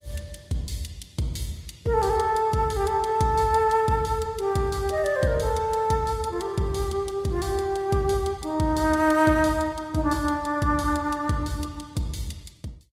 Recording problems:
codec artefacts; Opus, log-spectral distance 3 dB

